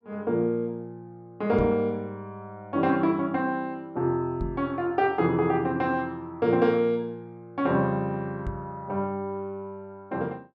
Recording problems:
microphone thump; at 1.5 s, at 4.5 s and at 8.5 s; peak -1 dB vs average level

